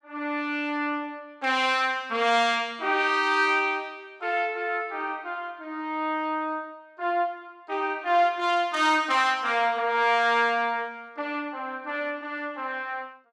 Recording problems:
none

